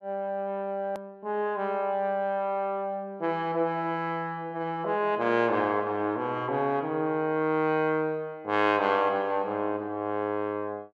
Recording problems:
edit click; at 1 s

